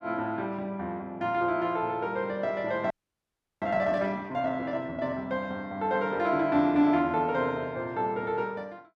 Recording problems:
audio freezing; at 3 s for 0.5 s

